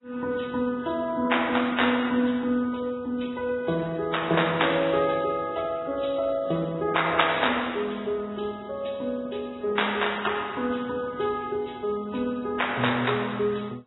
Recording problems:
codec artefacts; AAC, then Vorbis, log-spectral distance 6 dB, nothing above 3.9 kHz

